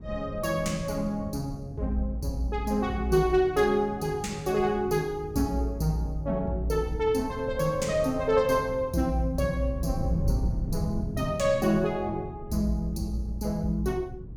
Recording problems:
wind on the microphone; below 150 Hz, SNR 11 dB

